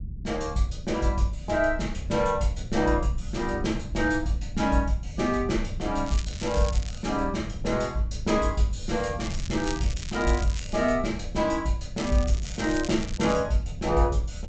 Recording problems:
treble cut off; nothing above 8 kHz
rumble; below 100 Hz, SNR 10 dB
crackling; at 6 s, from 9 to 11 s and from 12 to 13 s; loose cable, SNR 14 dB

